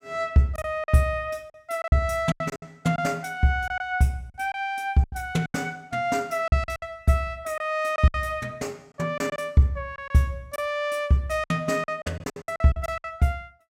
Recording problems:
packet loss; 11% of the sound replaced, filled with silence

